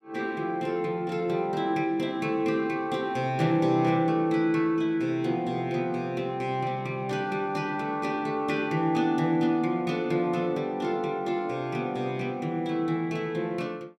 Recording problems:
none

